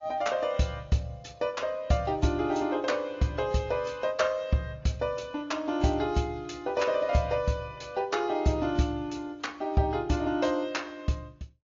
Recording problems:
treble missing; nothing above 6.9 kHz
lossy compression; AAC, log-spectral distance 2 dB

